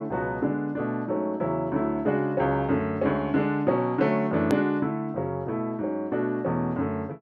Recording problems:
click at an edit; at 4.5 s

